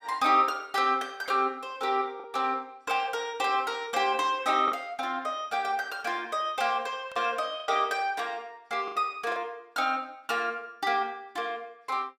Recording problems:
lost packets; 3% of the sound replaced, filled with the last packet

